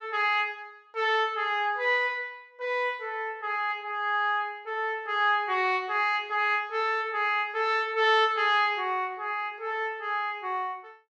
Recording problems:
none

